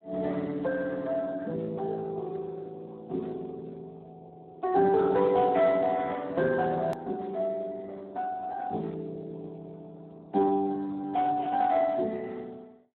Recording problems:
phone line; 170 Hz to 2 kHz, Speex
edit click; at 7 s

